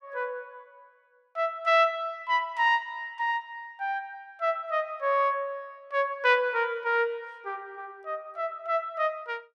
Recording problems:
none

